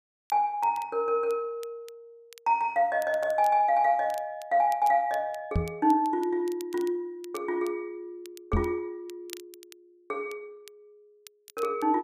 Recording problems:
crackle; vinyl, SNR 24 dB
microphone thump; at 5.5 s and at 8.5 s; peak +4 dB vs average level

